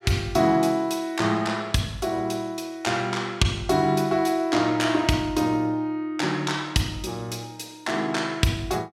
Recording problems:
none

